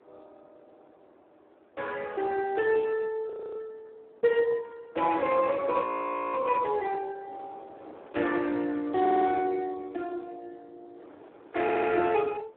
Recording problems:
telephone audio; 240 Hz to 3.5 kHz, Speex
wind noise; below 770 Hz, SNR 24 dB
frozen audio; at 3.5 s and at 6 s for 0.5 s
audio stuttering; at 9 s and at 12 s

